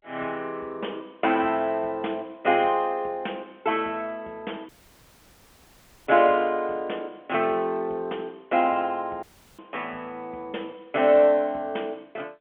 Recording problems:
phone line; 220 Hz to 3.4 kHz, G.711
dropout; at 4.5 s for 1.5 s and at 9 s

